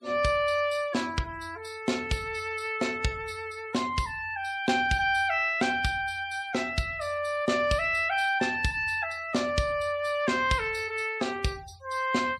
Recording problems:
noise reduction artefacts; signal-to-artefact ratio 23 dB

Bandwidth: 15 kHz